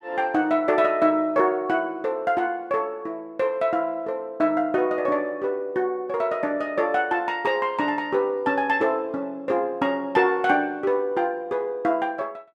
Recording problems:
none

